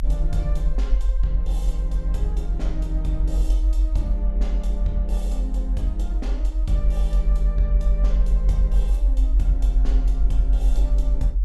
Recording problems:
rumble; below 50 Hz, strongest tone 42 Hz, SNR -10 dB

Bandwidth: 14 kHz